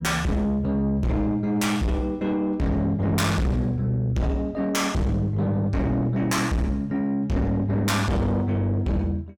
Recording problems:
distortion; soft clipping, signal-to-distortion ratio 6 dB

